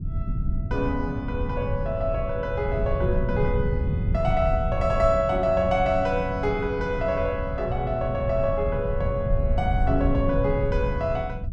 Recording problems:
low-frequency rumble; below 120 Hz, SNR 3 dB

